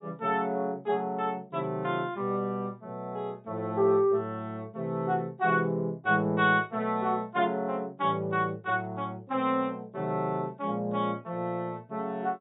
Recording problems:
low-pass filter; nothing above 4 kHz

